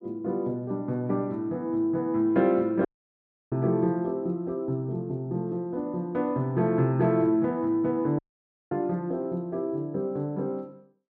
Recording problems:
audio cutting out; at 3 s for 0.5 s and at 8 s for 0.5 s

